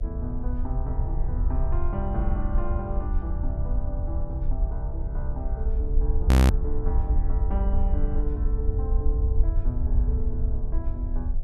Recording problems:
hum; 60 Hz, harmonics up to 720 Hz, SNR 18 dB
rumble; below 66 Hz, SNR -8 dB
audio freezing; at 6.5 s

